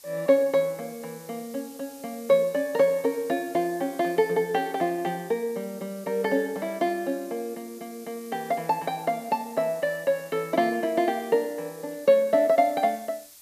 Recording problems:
background hiss; SNR 21 dB

